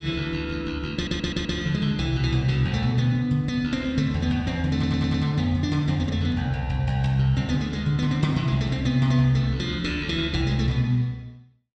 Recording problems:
audio stuttering; at 1 s and at 4.5 s

